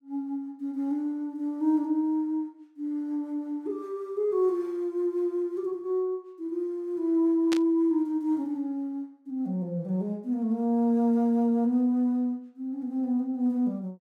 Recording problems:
static burst; at 7.5 s; peak -1 dB vs average level

